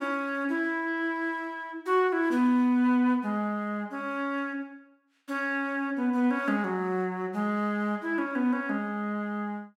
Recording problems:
none

